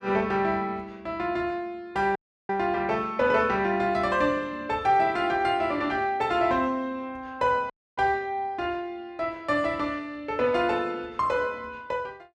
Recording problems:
audio cutting out; at 2 s and at 7.5 s

